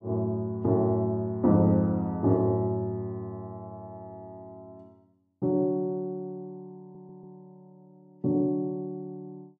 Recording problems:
stutter; at 7 s

